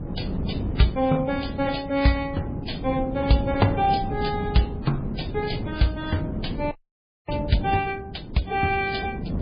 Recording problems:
lossy compression; MP3, then MP3, log-spectral distance 4 dB, nothing above 4.9 kHz
wind on the microphone; below 260 Hz, SNR 7 dB
frozen audio; at 6.5 s for 0.5 s

